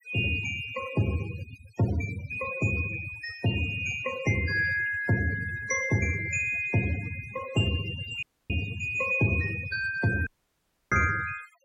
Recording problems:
noise reduction artefacts; signal-to-artefact ratio 15 dB
audio cutting out; at 8 s and at 10 s for 0.5 s

